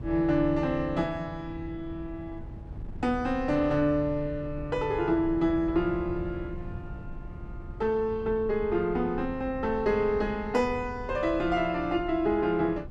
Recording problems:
wind noise; below 130 Hz, SNR 14 dB

